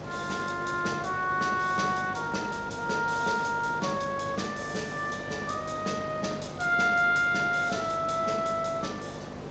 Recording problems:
lossy codec; Speex, log-spectral distance 6 dB, nothing above 7.3 kHz
mains hum; 50 Hz, harmonics up to 600 Hz, SNR 15 dB
background hiss; SNR 13 dB

